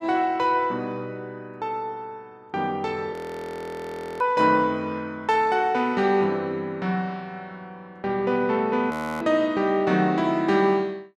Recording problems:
audio freezing; at 3 s for 1 s and at 9 s

